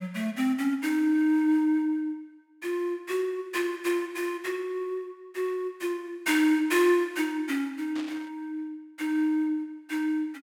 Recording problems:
burst of static; at 8 s; peak -10 dB vs average level

